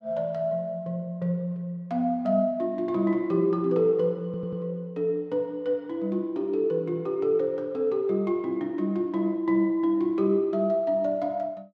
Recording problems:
stutter; at 4.5 s

